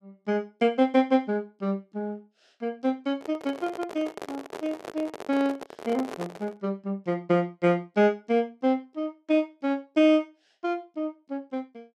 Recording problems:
handling noise; from 3 to 6.5 s; peak -3 dB vs average level

